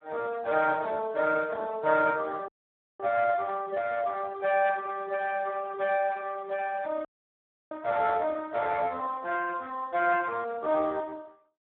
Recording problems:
telephone audio; 260 Hz to 3.9 kHz, Speex
dropout; at 2.5 s for 0.5 s and at 7 s for 0.5 s

